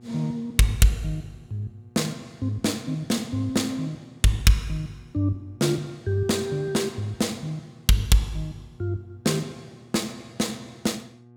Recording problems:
hum; 60 Hz, harmonics up to 840 Hz, SNR 26 dB

